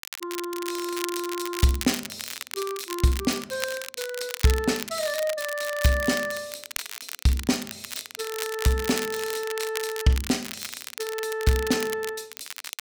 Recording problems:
crackle; vinyl, SNR 8 dB

